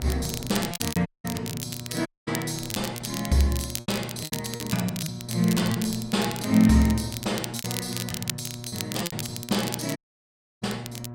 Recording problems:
hum; 60 Hz, harmonics up to 1.3 kHz, SNR 12 dB
wind noise; below 450 Hz, SNR 23 dB
crackle; vinyl, SNR 8 dB
lost packets; 8% of the sound replaced, filled with repeated pitch periods
dropout; at 1 s, at 2 s and at 10 s for 0.5 s

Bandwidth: 16 kHz